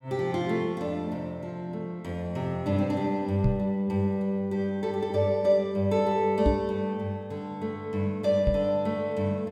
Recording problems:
microphone bump; at 3.5 s, at 6.5 s and at 8.5 s; peak +6 dB vs average level

